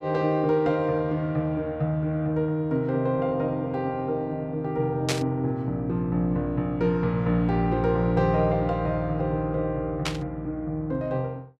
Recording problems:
burst of static; at 5 s and at 10 s; peak +3 dB vs average level

